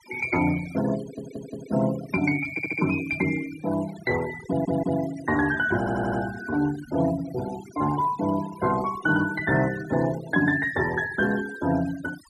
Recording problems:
denoising artefacts; signal-to-artefact ratio 15 dB
stutter; 4 times, first at 1 s

